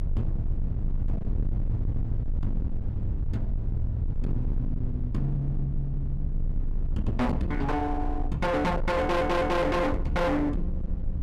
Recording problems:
distortion; hard clipping, signal-to-distortion ratio 7 dB
low-frequency rumble; below 84 Hz, strongest tone 26 Hz, SNR 2 dB
stutter; at 9 s

